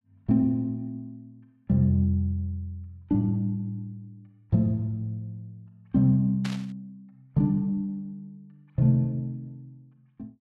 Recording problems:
burst of static; at 6.5 s; peak -6 dB vs average level

